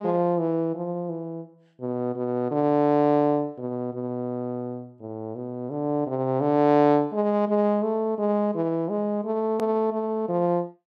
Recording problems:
edit click; at 9.5 s

